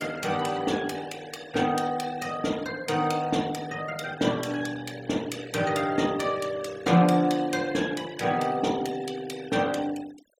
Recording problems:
denoising artefacts; signal-to-artefact ratio 19 dB

